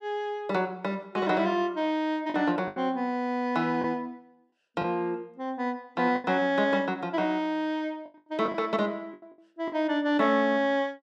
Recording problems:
lost packets; 5% of the sound replaced, filled with the last packet

